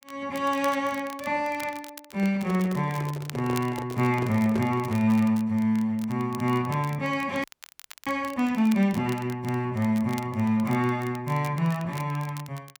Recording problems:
crackling; vinyl, SNR 20 dB
handling noise; from 2 to 5 s; peak -3 dB vs average level
frozen audio; at 7.5 s for 0.5 s

